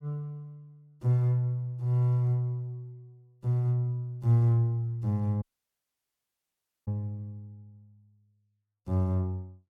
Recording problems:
dropout; at 5.5 s for 1.5 s

